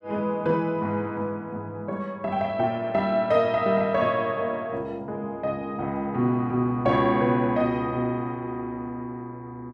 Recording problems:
none

